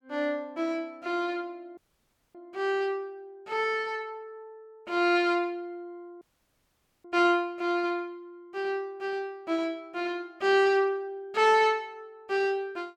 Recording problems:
audio cutting out; at 2 s for 0.5 s and at 6 s for 1 s

